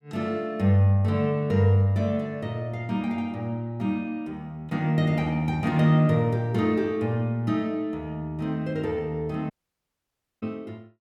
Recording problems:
audio cutting out; at 9.5 s for 1 s

